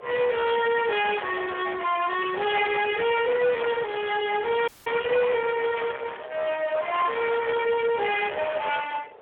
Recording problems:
phone line; 390 Hz to 3.3 kHz, Speex
distortion; soft clipping, signal-to-distortion ratio 8 dB
wind noise; below 1.9 kHz, SNR 15 dB
audio cutting out; at 4.5 s

